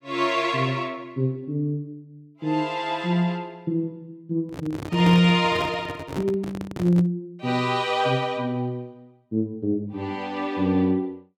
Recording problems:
microphone handling noise; from 4.5 to 7 s; peak -1 dB vs average level

